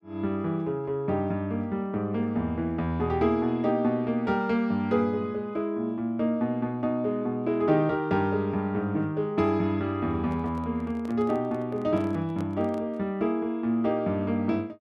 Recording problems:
handling noise; from 10 to 13 s; peak -8 dB vs average level

